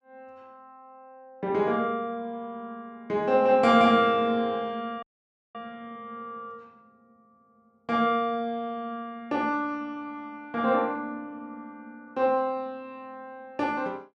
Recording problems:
dropout; at 5 s for 0.5 s

